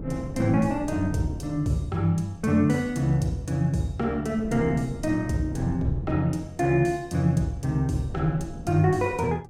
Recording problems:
wind on the microphone; below 250 Hz, SNR 15 dB

